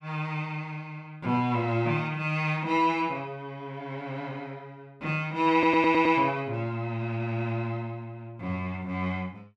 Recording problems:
stutter; at 5.5 s

